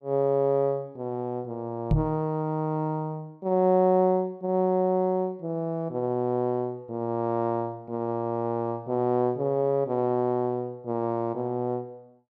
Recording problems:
microphone thump; at 2 s; peak +6 dB vs average level

